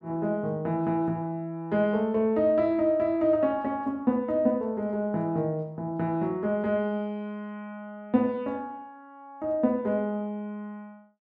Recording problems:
none

